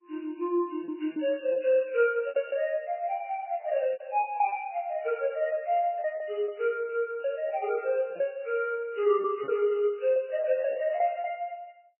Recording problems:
codec artefacts; MP3, log-spectral distance 2 dB, nothing above 2.8 kHz
packet loss; 10% of the sound replaced, filled with repeated pitch periods

